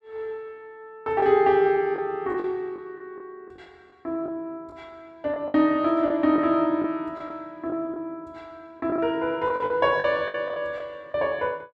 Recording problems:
packet loss; 7% of the sound replaced, filled with the last packet

